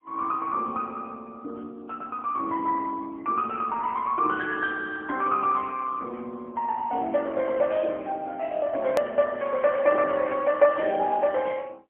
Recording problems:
phone line; 240 Hz to 3.3 kHz, AMR-NB, then MP3
edit click; at 9 s

